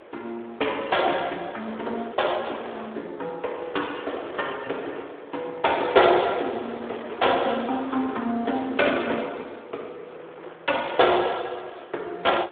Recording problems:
telephone audio; 300 Hz to 3.6 kHz, Speex
wind noise; below 1.2 kHz, SNR 16 dB

